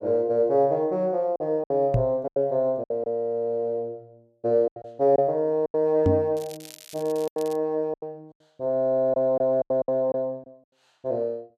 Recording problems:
lost packets; 8% of the sound replaced, filled with silence
microphone thump; at 2 s and at 6 s; peak +5 dB vs average level
crackling; from 6.5 to 7.5 s; loose cable, SNR 20 dB

